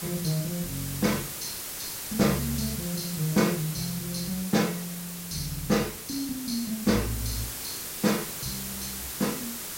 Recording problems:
hiss; slope -1 dB per octave, SNR 5 dB

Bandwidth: 16 kHz